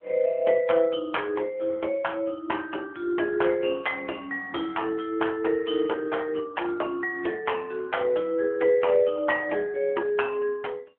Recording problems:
phone line; 300 Hz to 3.3 kHz, AMR-NB

